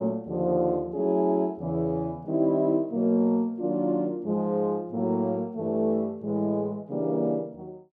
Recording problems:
none

